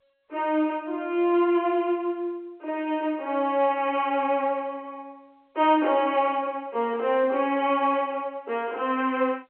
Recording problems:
telephone audio; 280 Hz to 3.4 kHz, G.711

